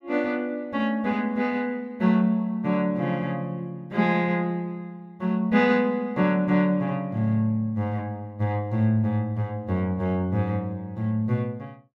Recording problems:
none

